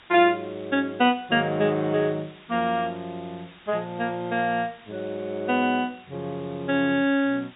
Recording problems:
low-pass filter; nothing above 4 kHz
background hiss; SNR 24 dB

